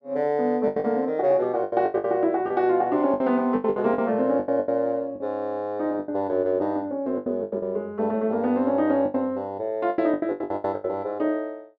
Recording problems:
lost packets; 14% of the sound replaced, filled with the last packet

